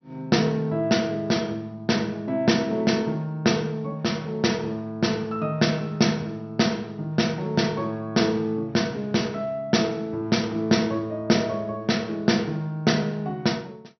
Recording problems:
low-pass filter; nothing above 6 kHz

